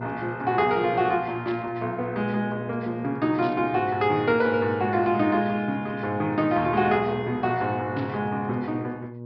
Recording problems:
treble missing; nothing above 5.5 kHz
electrical hum; 60 Hz, harmonics up to 960 Hz, SNR 13 dB
static burst; at 1.5 s, at 3.5 s and at 8 s; peak -13 dB vs average level

